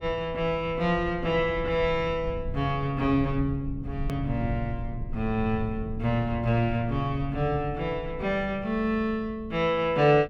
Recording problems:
rumble; below 110 Hz, SNR 11 dB
edit click; at 4 s

